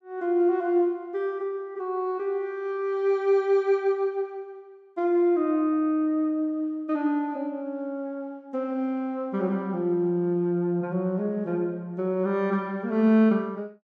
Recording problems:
none

